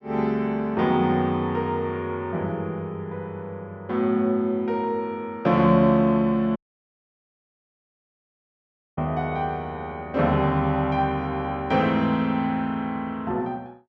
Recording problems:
dropout; at 6.5 s for 2.5 s

